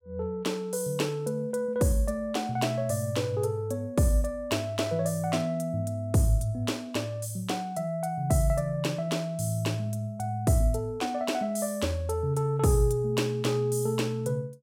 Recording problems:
none

